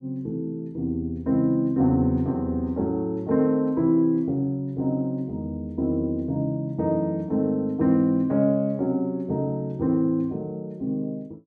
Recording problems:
none

